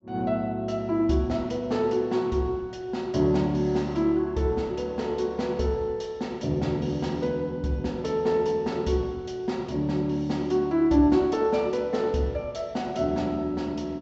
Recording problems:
low-pass filter; nothing above 7.5 kHz

